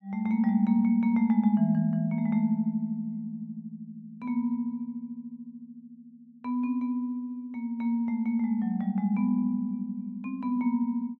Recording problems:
none

